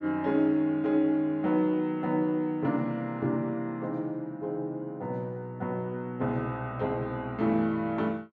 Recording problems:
none

